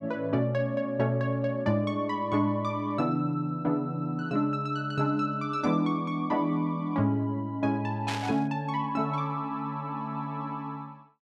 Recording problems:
static burst; at 8 s; peak -2 dB vs average level

